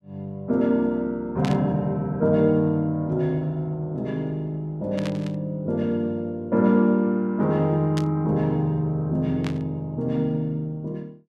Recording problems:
static burst; 4 times, first at 1.5 s; peak -6 dB vs average level

